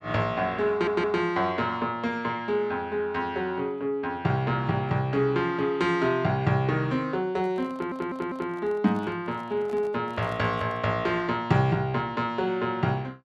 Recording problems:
audio stuttering; at 0.5 s and at 7.5 s
handling noise; from 7.5 to 11 s; peak -12 dB vs average level

